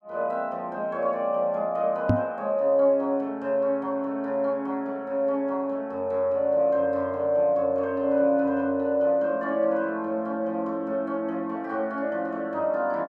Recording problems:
knock on the microphone; at 2 s; peak +7 dB vs average level

